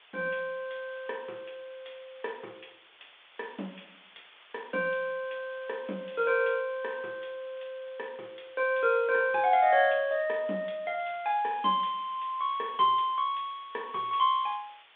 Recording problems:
phone line; 240 Hz to 3.6 kHz, G.726
hiss; SNR 25 dB

